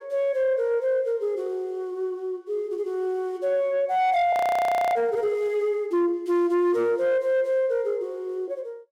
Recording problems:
distorted audio; soft clipping, signal-to-distortion ratio 11 dB
frozen audio; at 4.5 s for 0.5 s

